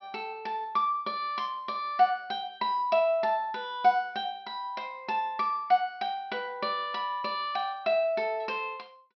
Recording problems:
treble cut off; nothing above 5.5 kHz

